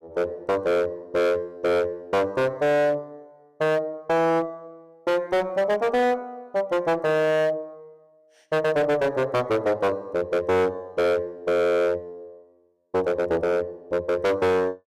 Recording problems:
distorted audio; hard clipping, signal-to-distortion ratio 6 dB

